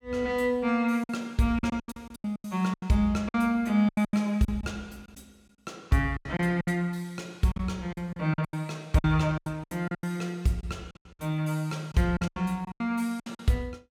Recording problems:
packet loss; 15% of the sound replaced, filled with silence

